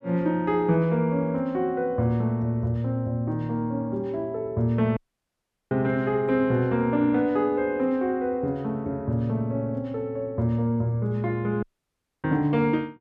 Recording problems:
dropout; at 5 s for 0.5 s and at 12 s for 0.5 s

